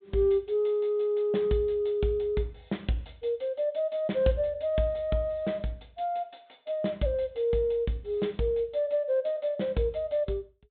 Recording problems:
treble cut off; nothing above 4 kHz

